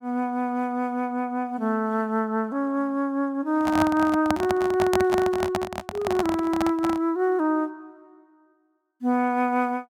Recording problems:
handling noise; from 3.5 to 7 s; peak +3 dB vs average level

